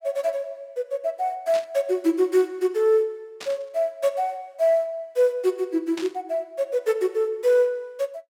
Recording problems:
static burst; at 1.5 s, at 3.5 s and at 6 s; peak -8 dB vs average level

